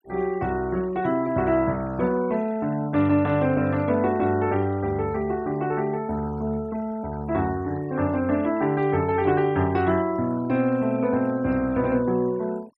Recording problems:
denoising artefacts; signal-to-artefact ratio 22 dB

